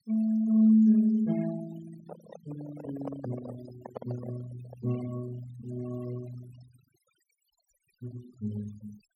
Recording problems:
denoising artefacts; signal-to-artefact ratio 20 dB
handling noise; from 2 to 5 s; peak -7 dB vs average level

